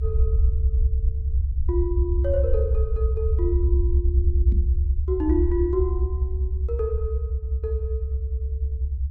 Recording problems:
rumble; below 72 Hz, SNR -5 dB
knock on the microphone; at 4.5 s; peak -1 dB vs average level

